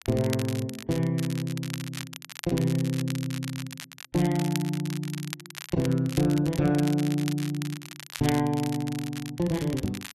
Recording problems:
crackling; vinyl, SNR 12 dB

